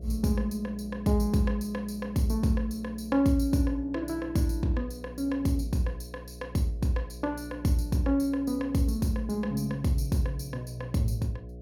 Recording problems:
hum; 60 Hz, harmonics up to 720 Hz, SNR 15 dB

